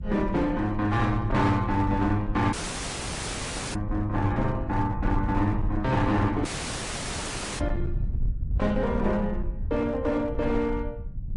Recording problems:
codec artefacts; Vorbis, then MP3, log-spectral distance 4 dB
distorted audio; hard clipping, uneven, signal-to-distortion ratio 11 dB
rumble; below 92 Hz, SNR 7 dB
dropout; at 2.5 s for 1 s and at 6.5 s for 1 s

